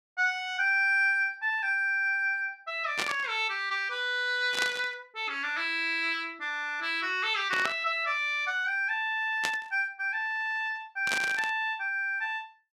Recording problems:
static burst; 5 times, first at 3 s; peak +2 dB vs average level

